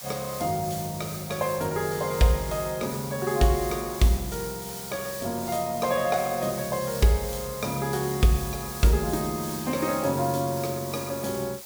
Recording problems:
background hiss; SNR 10 dB

